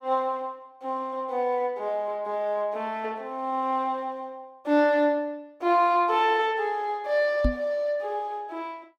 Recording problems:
microphone thump; at 7.5 s; peak +5 dB vs average level

